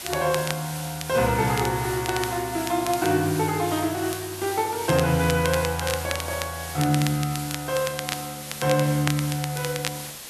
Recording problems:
hiss; slope 0 dB per octave, SNR 10 dB
crackle; vinyl, SNR 10 dB

